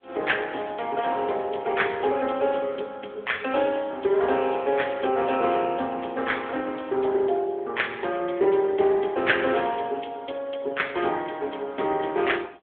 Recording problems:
phone line; 280 Hz to 3.6 kHz, AMR-NB

